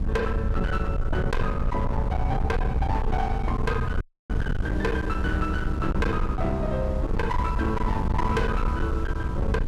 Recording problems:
distorted audio; hard clipping, signal-to-distortion ratio 8 dB
low-frequency rumble; below 98 Hz, SNR 0 dB
wind noise; below 100 Hz, SNR 5 dB
dropout; at 4 s

